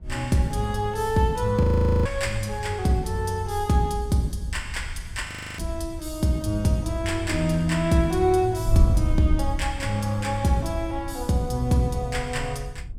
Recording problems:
wind noise; below 76 Hz, SNR 9 dB
audio freezing; at 1.5 s and at 5.5 s

